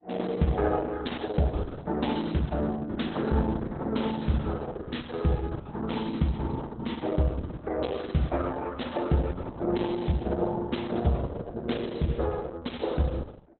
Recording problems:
lossy compression; Opus, log-spectral distance 5 dB, nothing above 4 kHz

